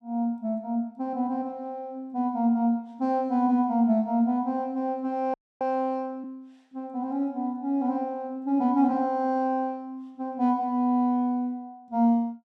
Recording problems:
frozen audio; at 5.5 s

